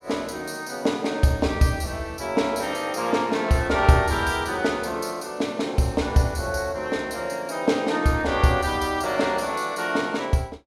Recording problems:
none

